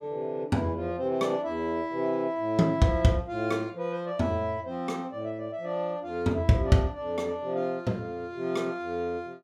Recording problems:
none

